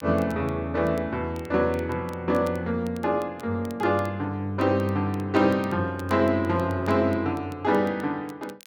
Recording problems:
crackle; vinyl, SNR 27 dB

